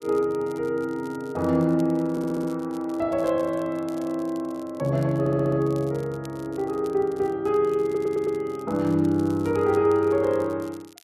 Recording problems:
crackling; vinyl, SNR 27 dB
audio stuttering; at 2 s, at 5 s and at 8 s

